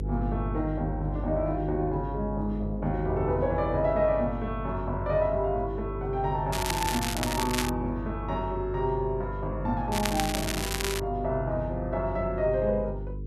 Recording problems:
electrical hum; 50 Hz, harmonics up to 500 Hz, SNR 7 dB
crackling; from 6.5 to 7.5 s and from 10 to 11 s; loose cable, SNR 3 dB

